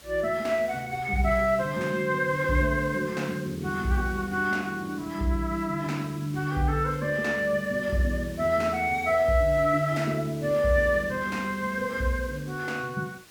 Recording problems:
background hiss; slope -1 dB per octave, SNR 21 dB

